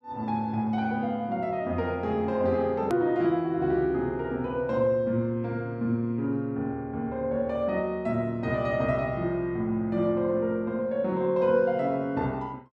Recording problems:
hard cut with a click; at 3 s

